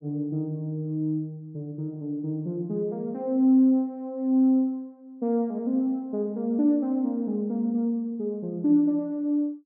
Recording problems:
none

